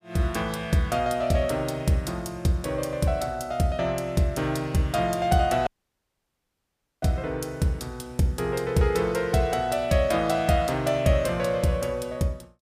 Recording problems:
dropout; at 5.5 s for 1.5 s

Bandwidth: 15 kHz